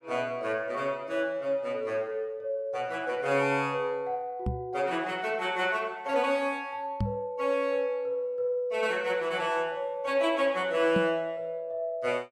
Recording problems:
knock on the microphone; at 4.5 s, at 7 s and at 11 s; peak +4 dB vs average level

